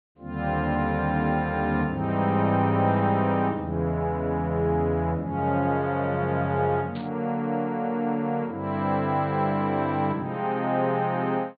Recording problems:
treble cut off; nothing above 4.5 kHz
burst of static; at 7 s; peak -15 dB vs average level

